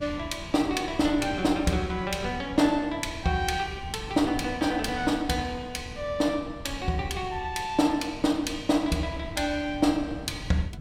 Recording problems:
wind noise; below 160 Hz, SNR 15 dB

